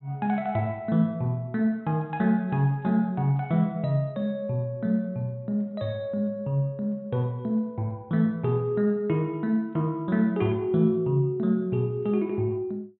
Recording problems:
treble cut off; nothing above 4 kHz

